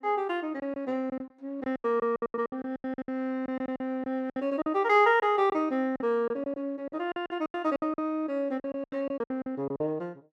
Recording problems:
packet loss; 16% of the sound replaced, filled with silence

